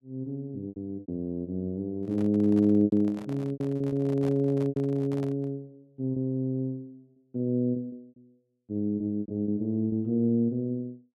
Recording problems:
packet loss; 8% of the sound replaced, filled with repeated pitch periods
microphone handling noise; from 2 to 5.5 s; peak -12 dB vs average level

